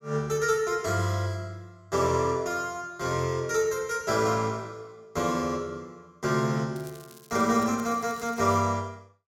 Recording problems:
crackling; from 7 to 8.5 s; loose cable, SNR 23 dB

